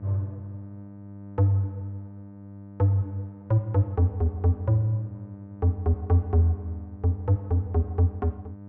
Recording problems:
hum; 50 Hz, harmonics up to 900 Hz, SNR 17 dB

